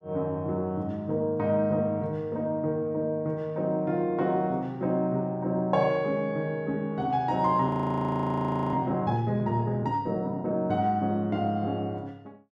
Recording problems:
audio freezing; at 7.5 s for 1 s

